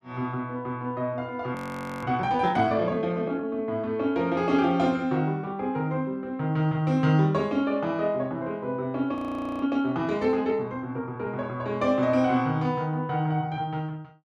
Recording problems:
audio freezing; at 1.5 s and at 9 s

